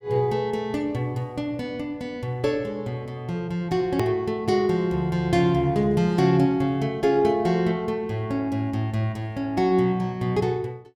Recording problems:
click at an edit; at 4 s

